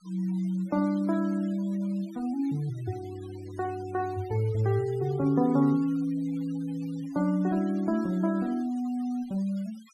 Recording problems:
denoising artefacts; signal-to-artefact ratio 23 dB

